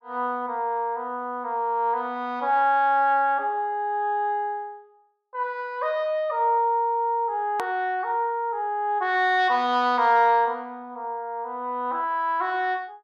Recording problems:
click at an edit; at 7.5 s

